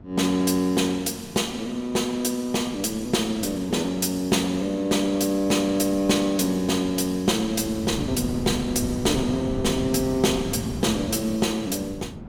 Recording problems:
wind noise; below 260 Hz, SNR 10 dB

